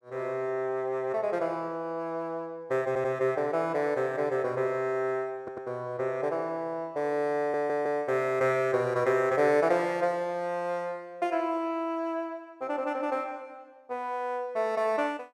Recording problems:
stutter; at 3 s, at 5.5 s and at 7.5 s

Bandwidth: 13 kHz